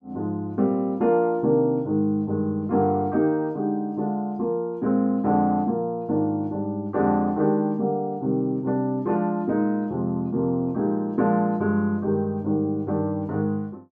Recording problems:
none

